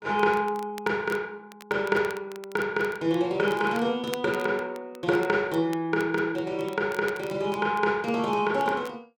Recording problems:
crackling; vinyl, SNR 21 dB

